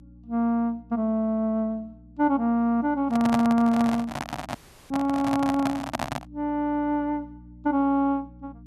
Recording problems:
electrical hum; 60 Hz, harmonics up to 300 Hz, SNR 24 dB
microphone handling noise; from 3 to 6.5 s; peak +1 dB vs average level
dropout; at 4.5 s

